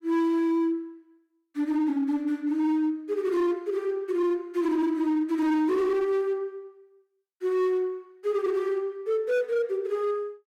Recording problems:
distortion; hard clipping, signal-to-distortion ratio 10 dB

